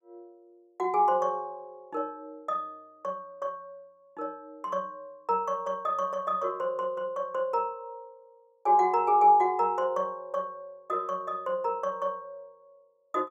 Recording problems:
none

